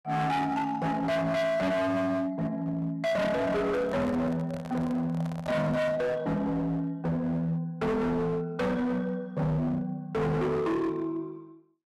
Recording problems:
distortion; hard clipping, uneven, signal-to-distortion ratio 7 dB
microphone handling noise; from 3.5 to 6 s; peak -7 dB vs average level

